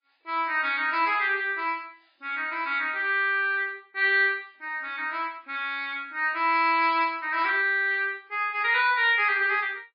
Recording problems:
lossy codec; MP3, log-spectral distance 2 dB, nothing above 4.4 kHz

